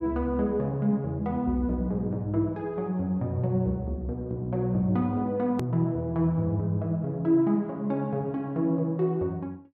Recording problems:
hard cut with a click; at 5.5 s

